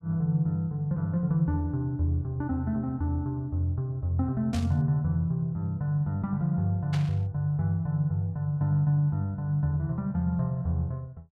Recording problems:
burst of static; at 4.5 s and at 7 s; peak -7 dB vs average level

